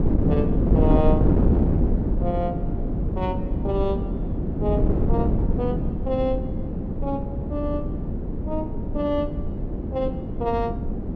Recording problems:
wind on the microphone; below 260 Hz, SNR -4 dB

